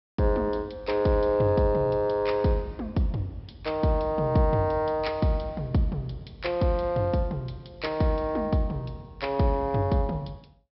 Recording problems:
low-pass filter; nothing above 5.4 kHz

